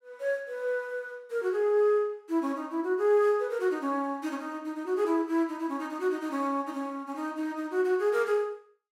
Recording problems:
none

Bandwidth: 16 kHz